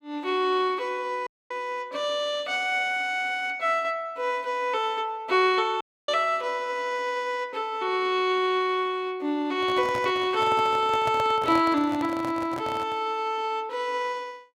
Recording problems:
audio cutting out; at 1.5 s and at 6 s
handling noise; from 9.5 to 13 s; peak -4 dB vs average level

